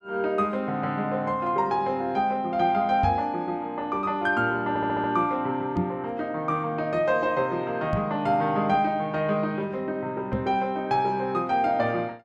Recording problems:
microphone bump; 4 times, first at 3 s; peak +2 dB vs average level
audio stuttering; at 4.5 s

